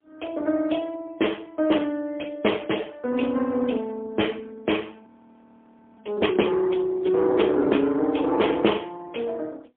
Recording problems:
telephone audio; 220 Hz to 3.4 kHz, AMR-NB, then MP3
audio freezing; at 5 s for 1 s

